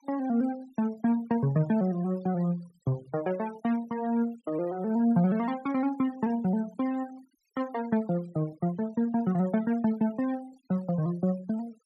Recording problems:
denoising artefacts; signal-to-artefact ratio 24 dB

